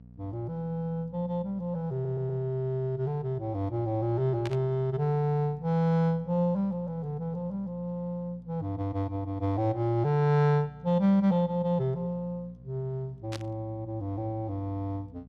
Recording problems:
hum; 60 Hz, harmonics up to 660 Hz, SNR 22 dB
audio stuttering; at 2 s
burst of static; at 4.5 s and at 13 s; peak -6 dB vs average level

